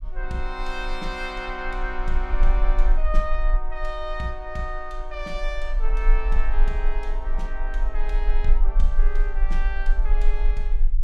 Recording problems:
rumble; below 34 Hz, strongest tone 26 Hz, SNR -6 dB

